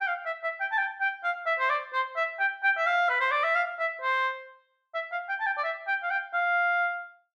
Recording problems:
none

